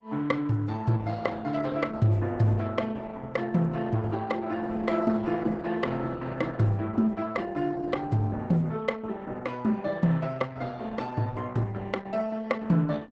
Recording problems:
lossy codec; Opus, log-spectral distance 3 dB, nothing above 8 kHz

